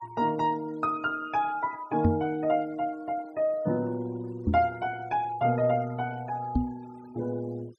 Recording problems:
denoising artefacts; signal-to-artefact ratio 24 dB
microphone bump; at 2 s, at 4.5 s and at 6.5 s; peak +8 dB vs average level

